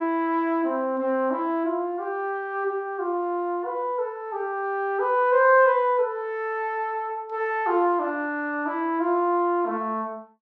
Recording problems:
none

